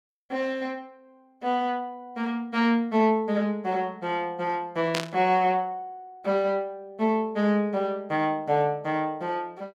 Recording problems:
static burst; at 5 s; peak +2 dB vs average level

